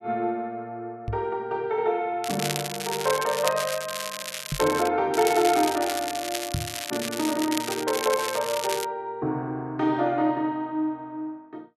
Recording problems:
knock on the microphone; at 1 s, at 4.5 s and at 6.5 s; peak +1 dB vs average level
crackling; from 2 to 5 s and from 5 to 9 s; loose cable, SNR 6 dB

